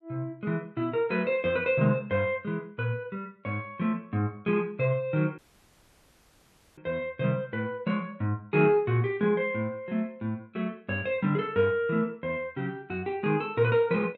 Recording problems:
audio cutting out; at 5.5 s for 1.5 s

